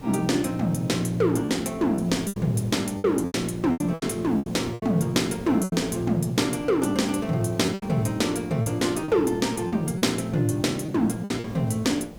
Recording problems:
background hiss; SNR 17 dB
lost packets; 9% of the sound replaced, filled with repeated pitch periods

